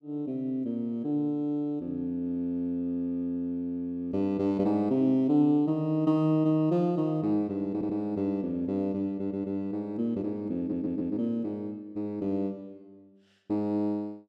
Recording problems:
audio stuttering; at 7.5 s, at 9 s and at 11 s

